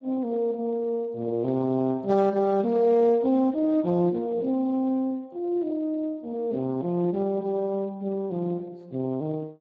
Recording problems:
lossy compression; Speex, log-spectral distance 2 dB

